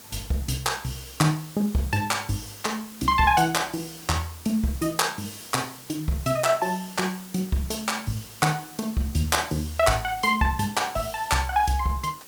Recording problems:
hiss; slope -2 dB per octave, SNR 17 dB

